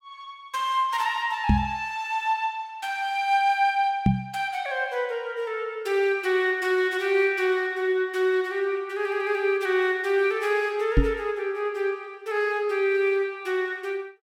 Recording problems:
knock on the microphone; at 1.5 s, at 4 s and at 11 s; peak +8 dB vs average level

